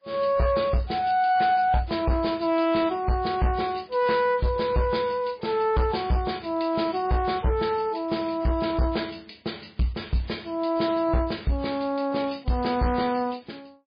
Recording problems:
lossy codec; MP3, log-spectral distance 6 dB, nothing above 4.8 kHz
distorted audio; hard clipping, uneven, signal-to-distortion ratio 11 dB

